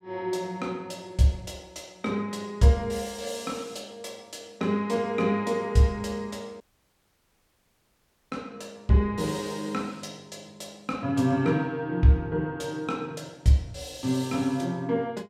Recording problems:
dropout; at 6.5 s for 1.5 s

